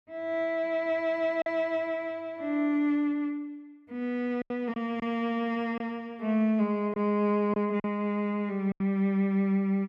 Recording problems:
lost packets; 4% of the sound replaced, filled with silence

